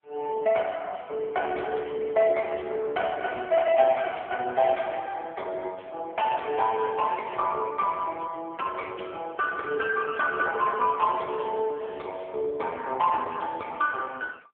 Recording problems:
phone line; 320 Hz to 3.2 kHz, AMR-NB

